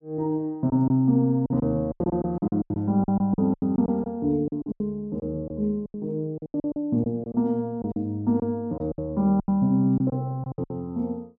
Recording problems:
lost packets; 14% of the sound replaced, filled with silence

